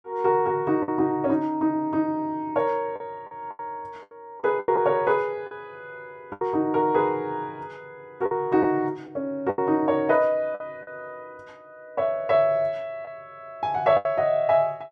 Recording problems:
lost packets; 6% of the sound replaced, filled with the last packet

